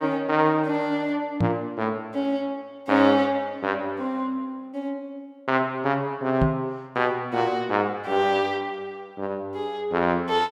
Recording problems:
microphone bump; at 1.5 s and at 6.5 s; peak +5 dB vs average level

